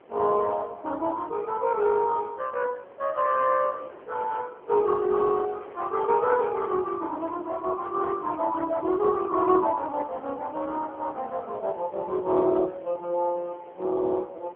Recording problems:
phone line; 260 Hz to 2.9 kHz, AMR-NB
wind on the microphone; below 800 Hz, SNR 21 dB

